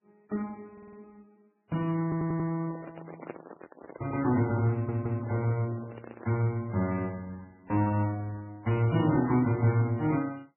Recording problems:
codec artefacts; MP3, then Vorbis, log-spectral distance 3 dB, nothing above 2.4 kHz
audio stuttering; at 0.5 s, at 2 s and at 4.5 s
handling noise; from 2.5 to 6.5 s; peak -6 dB vs average level

